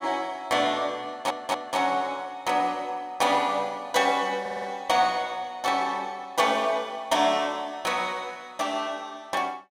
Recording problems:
audio stuttering; at 1 s and at 4.5 s

